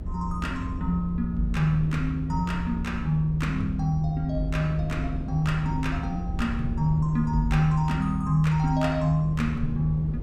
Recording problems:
low-frequency rumble; below 110 Hz, SNR 8 dB

